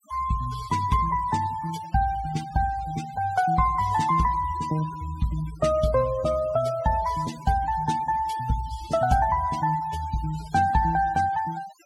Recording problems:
noise reduction artefacts; signal-to-artefact ratio 18 dB

